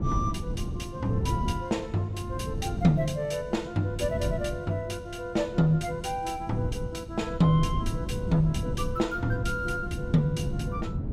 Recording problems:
wind on the microphone; below 180 Hz, SNR 5 dB

